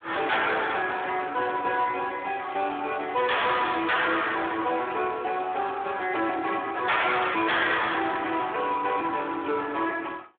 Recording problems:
telephone audio; 190 Hz to 3.5 kHz, Speex
distorted audio; soft clipping, signal-to-distortion ratio 7 dB
crackling; at 1 s and from 2.5 to 5 s; loose cable, SNR 26 dB

